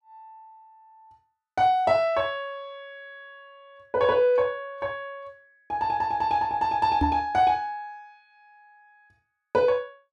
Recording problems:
microphone bump; at 7 s; peak +3 dB vs average level

